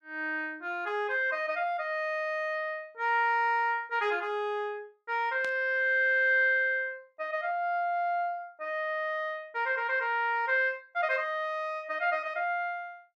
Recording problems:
burst of static; at 5.5 s; peak -10 dB vs average level

